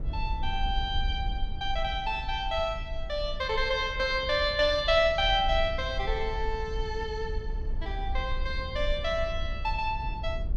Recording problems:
low-frequency rumble; below 60 Hz, SNR 7 dB

